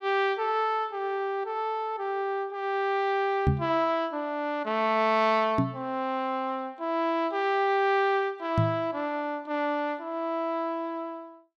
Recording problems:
microphone thump; at 3.5 s, at 5.5 s and at 8.5 s; peak +7 dB vs average level

